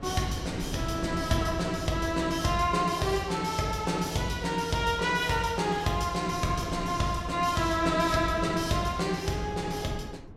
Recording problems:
wind noise; below 340 Hz, SNR 13 dB

